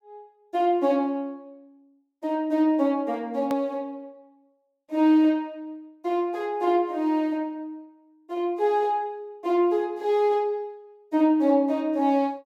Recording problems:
edit click; at 3.5 s

